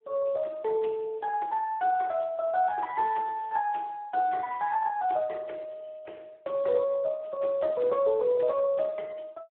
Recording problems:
telephone audio; 280 Hz to 2.9 kHz, Speex

